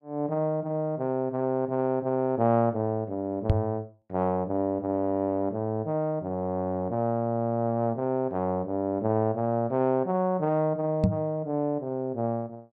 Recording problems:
knock on the microphone; at 3.5 s and at 11 s; peak +9 dB vs average level

